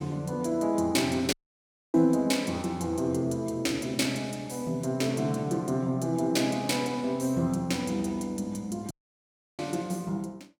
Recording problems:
dropout; at 1.5 s for 0.5 s and at 9 s for 0.5 s

